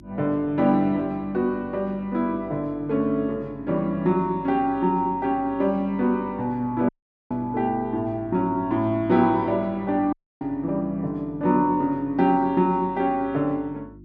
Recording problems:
hum; 50 Hz, harmonics up to 350 Hz, SNR 22 dB
audio cutting out; at 7 s and at 10 s

